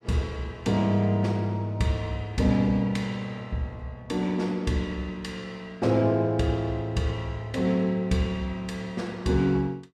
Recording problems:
none

